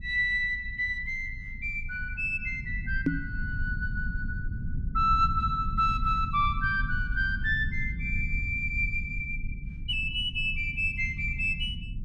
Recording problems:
low-frequency rumble; below 98 Hz, SNR 7 dB
microphone thump; at 3 s; peak +7 dB vs average level

